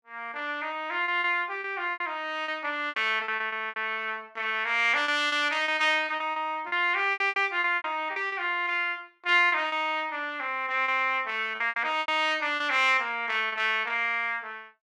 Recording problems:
lost packets; 11% of the sound replaced, filled with repeated pitch periods

